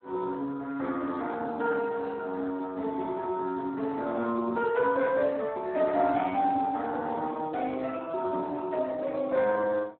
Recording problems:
phone line; 260 Hz to 3 kHz, Speex

